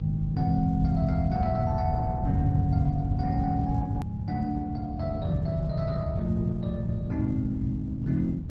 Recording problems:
lossy codec; Opus, log-spectral distance 2 dB
hum; 60 Hz, harmonics up to 1.5 kHz, SNR 26 dB
low-frequency rumble; below 140 Hz, SNR 1 dB
click at an edit; at 4 s

